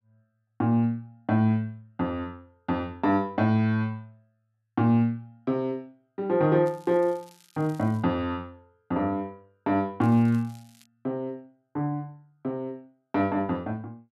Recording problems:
crackling; from 6.5 to 8 s and at 10 s; loose cable, SNR 29 dB

